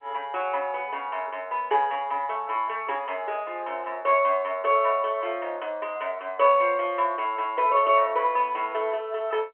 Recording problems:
phone line; 370 Hz to 3.3 kHz, G.711

